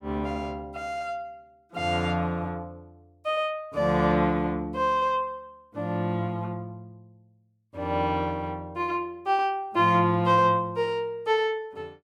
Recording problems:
none

